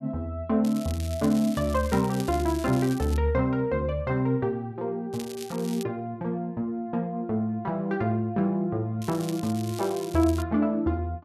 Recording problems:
crackle; from 0.5 to 3 s, at 5 s and from 9 to 10 s; loose cable, SNR 16 dB

